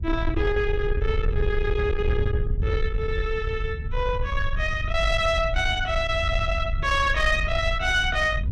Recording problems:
distorted audio; soft clipping, signal-to-distortion ratio 12 dB
wind noise; below 82 Hz, SNR 4 dB

